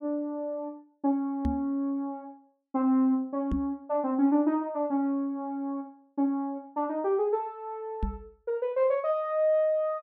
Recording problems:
microphone thump; at 1.5 s, at 3.5 s and at 8 s; peak +2 dB vs average level

